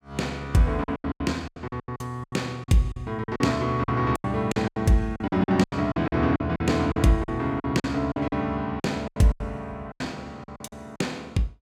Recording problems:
lost packets; 17% of the sound replaced, filled with silence

